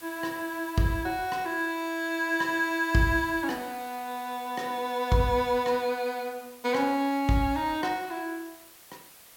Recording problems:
background hiss; slope -1 dB per octave, SNR 20 dB

